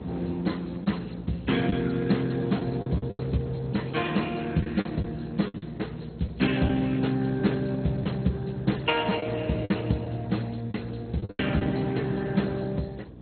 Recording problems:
lossy codec; Speex, then MP2, log-spectral distance 5 dB, nothing above 4.2 kHz
hum; 60 Hz, harmonics up to 540 Hz, SNR 15 dB
wind on the microphone; below 470 Hz, SNR 14 dB
packet loss; 5% of the sound replaced, filled with the last packet

